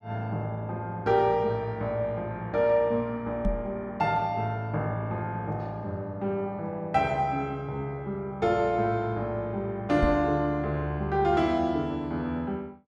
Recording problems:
microphone thump; at 3.5 s and at 10 s; peak +4 dB vs average level

